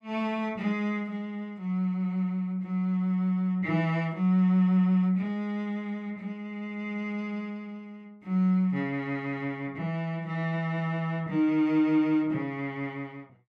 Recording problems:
none

